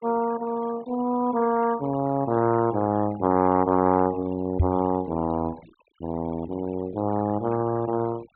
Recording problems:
treble missing; nothing above 4 kHz
denoising artefacts; signal-to-artefact ratio 20 dB
microphone thump; at 4.5 s; peak +6 dB vs average level

